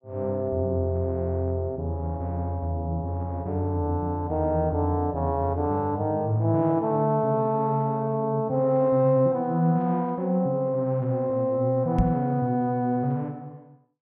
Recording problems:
knock on the microphone; at 12 s; peak +5 dB vs average level

